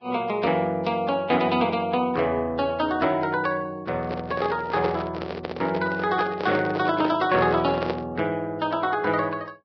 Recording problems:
codec artefacts; Vorbis, log-spectral distance 3 dB
microphone handling noise; from 4 to 8 s; peak +1 dB vs average level

